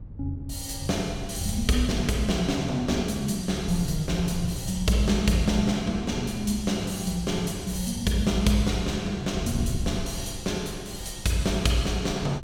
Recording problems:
wind noise; below 130 Hz, SNR 11 dB

